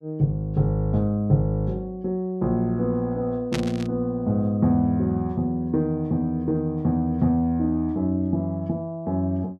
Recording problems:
static burst; at 3.5 s; peak -2 dB vs average level

